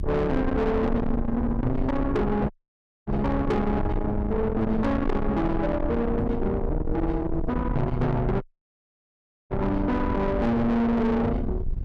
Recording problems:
distortion; soft clipping, signal-to-distortion ratio 7 dB
rumble; below 280 Hz, SNR 5 dB
audio cutting out; at 2.5 s for 0.5 s and at 8.5 s for 1 s

